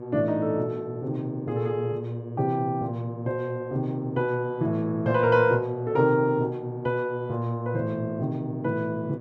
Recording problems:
hum; 60 Hz, harmonics up to 1.2 kHz, SNR 13 dB

